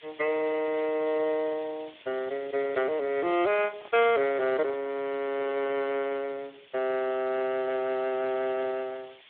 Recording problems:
phone line; 280 Hz to 3.6 kHz, Speex
hiss; SNR 23 dB
microphone handling noise; from 3.5 to 5 s; peak -10 dB vs average level

